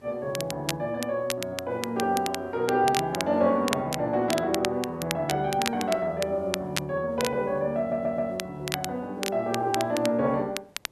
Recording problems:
hiss; slope -7 dB per octave, SNR 30 dB
crackling; vinyl, SNR 8 dB
audio stuttering; at 8 s

